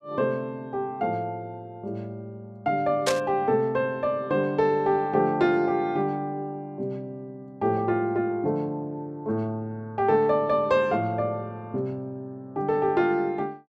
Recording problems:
static burst; at 3 s; peak +3 dB vs average level

